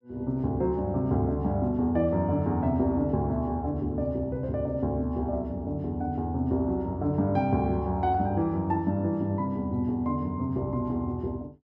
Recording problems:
none

